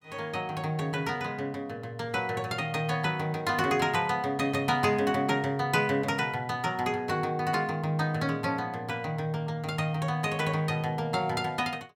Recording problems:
none

